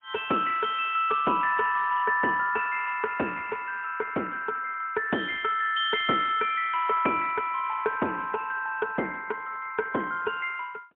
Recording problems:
phone line; 220 Hz to 3.4 kHz, AMR-NB, then MP3

